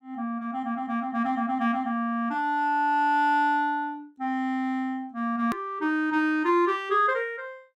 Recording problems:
click at an edit; at 5.5 s

